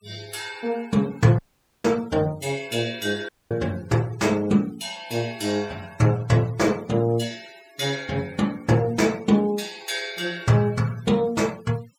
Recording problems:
denoising artefacts; signal-to-artefact ratio 22 dB
audio cutting out; at 1.5 s and at 3.5 s

